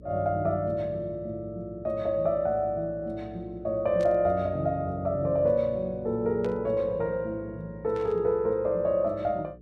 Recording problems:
electrical hum; 60 Hz, harmonics up to 480 Hz, SNR 20 dB
static burst; at 4 s, at 6.5 s and at 8 s; peak -14 dB vs average level

